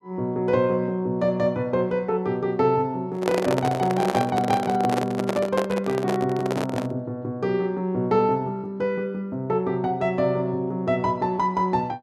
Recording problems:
handling noise; from 3 to 7 s; peak +2 dB vs average level

